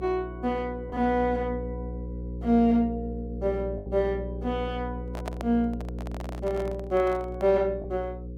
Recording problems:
hum; 60 Hz, harmonics up to 540 Hz, SNR 9 dB
lost packets; 1.6% of the sound replaced, filled with the last packet
microphone handling noise; from 5 to 7.5 s; peak -4 dB vs average level

